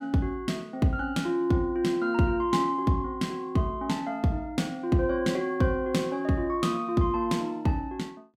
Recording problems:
none

